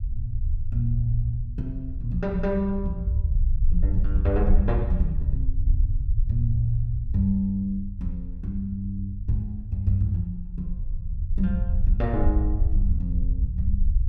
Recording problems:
rumble; below 70 Hz, SNR 0 dB

